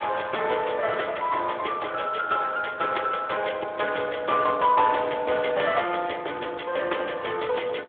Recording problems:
telephone audio; 300 Hz to 3.4 kHz, Speex

